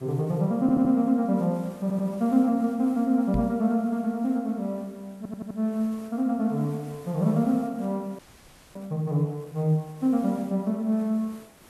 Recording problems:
background hiss; slope -4 dB per octave, SNR 26 dB
audio stuttering; at 0.5 s, at 2 s and at 5 s
knock on the microphone; at 3.5 s; peak -1 dB vs average level
audio freezing; at 8 s for 0.5 s

